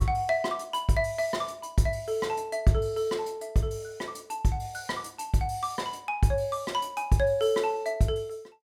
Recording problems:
none

